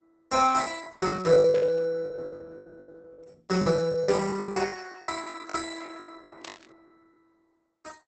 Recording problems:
lossy compression; Opus, log-spectral distance 6 dB, nothing above 8 kHz
lost packets; 24% of the sound replaced, filled with the last packet
burst of static; at 1.5 s, at 4 s and at 6.5 s; peak -12 dB vs average level

